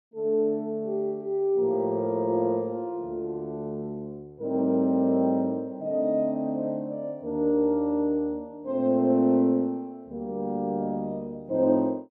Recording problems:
none

